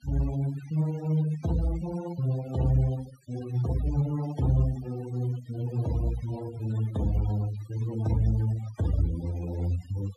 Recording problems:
noise reduction artefacts; signal-to-artefact ratio 16 dB

